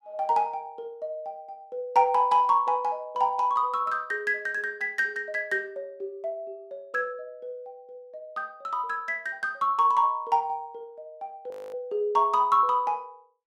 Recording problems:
frozen audio; at 12 s

